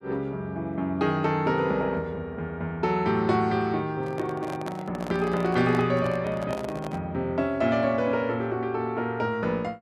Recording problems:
microphone handling noise; from 4 to 7 s; peak -4 dB vs average level

